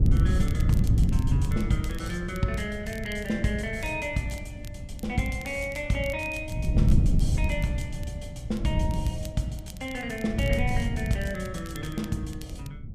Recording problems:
wind noise; below 140 Hz, SNR -2 dB
crackle; vinyl, SNR 19 dB

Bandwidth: 14.5 kHz